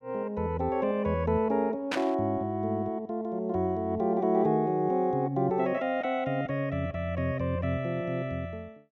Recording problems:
burst of static; at 2 s; peak +1 dB vs average level

